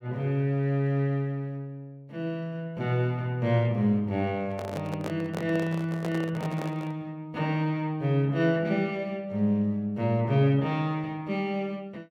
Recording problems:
handling noise; from 4.5 to 7 s; peak -3 dB vs average level

